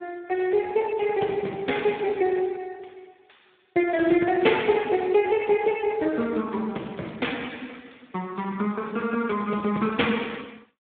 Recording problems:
phone line; 260 Hz to 3.5 kHz, Speex

